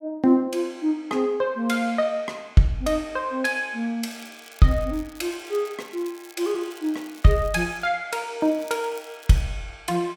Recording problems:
crackle; from 4 to 8 s and at 8.5 s; loose cable, SNR 24 dB

